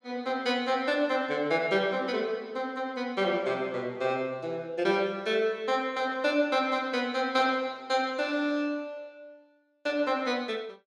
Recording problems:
none

